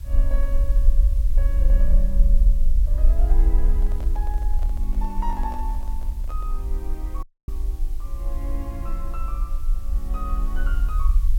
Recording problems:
hiss; slope -1 dB per octave, SNR 15 dB
rumble; below 46 Hz, SNR -13 dB
microphone handling noise; from 3.5 to 6.5 s; peak -2 dB vs average level
dropout; at 7 s

